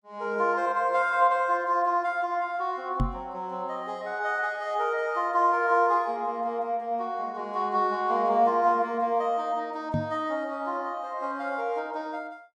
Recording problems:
knock on the microphone; at 3 s and at 10 s; peak +3 dB vs average level

